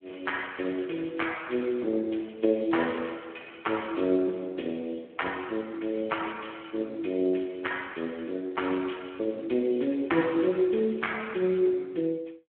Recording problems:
telephone audio; 240 Hz to 3.3 kHz, Speex

